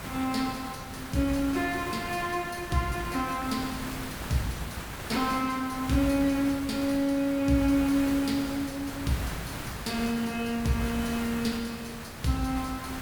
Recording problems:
background hiss; slope -4 dB per octave, SNR 9 dB

